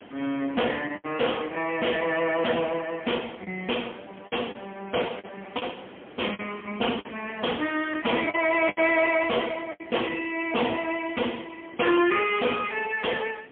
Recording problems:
telephone audio; 240 Hz to 3.3 kHz, AMR-NB, then MP3
distortion; soft clipping, signal-to-distortion ratio 10 dB
hiss; SNR 20 dB
packet loss; 5% of the sound replaced, filled with the last packet

